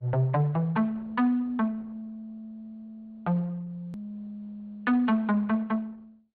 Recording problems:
treble cut off; nothing above 4.5 kHz
lossy codec; Opus, log-spectral distance 2 dB
edit click; at 4 s

